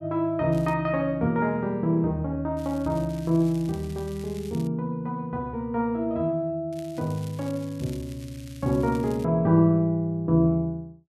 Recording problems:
crackle; at 0.5 s, from 2.5 to 4.5 s and from 6.5 to 9 s; loose cable, SNR 23 dB

